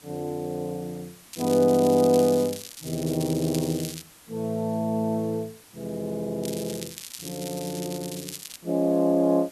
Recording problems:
background hiss; slope -1 dB per octave, SNR 24 dB
crackle; from 1.5 to 4 s and from 6.5 to 8.5 s; loose cable, SNR 12 dB

